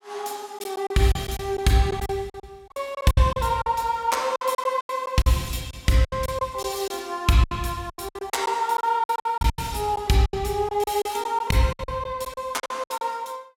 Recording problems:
lost packets; 14% of the sound replaced, filled with silence

